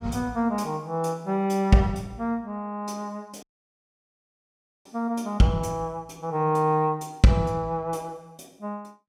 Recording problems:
dropout; at 3.5 s for 1.5 s

